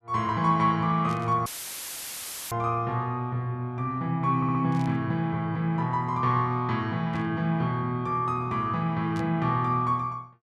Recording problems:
burst of static; 4 times, first at 1 s; peak -14 dB vs average level
audio cutting out; at 1.5 s for 1 s; filled with static
stutter; at 4.5 s

